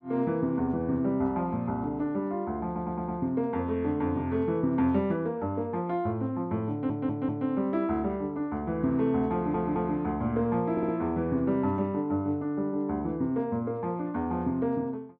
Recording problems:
stutter; 4 times, first at 2.5 s

